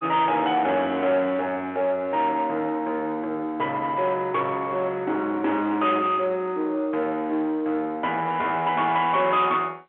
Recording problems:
telephone audio; 260 Hz to 3.7 kHz, G.711
distortion; soft clipping, signal-to-distortion ratio 12 dB

